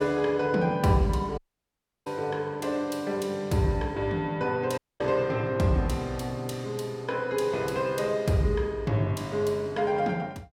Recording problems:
audio cutting out; at 1.5 s for 0.5 s and at 5 s

